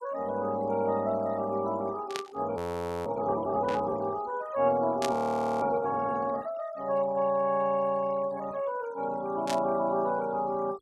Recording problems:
noise reduction artefacts; signal-to-artefact ratio 24 dB
static burst; 4 times, first at 2 s; peak -1 dB vs average level
frozen audio; at 2.5 s and at 5 s

